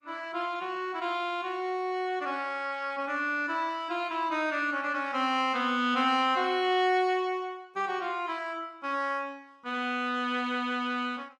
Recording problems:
codec artefacts; Opus, log-spectral distance 2 dB

